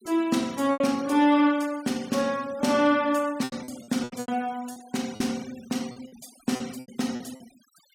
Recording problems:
noise reduction artefacts; signal-to-artefact ratio 21 dB
lost packets; 11% of the sound replaced, filled with repeated pitch periods

